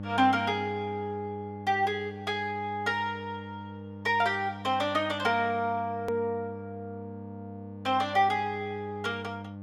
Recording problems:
hum; 50 Hz, harmonics up to 900 Hz, SNR 12 dB
click at an edit; at 6 s

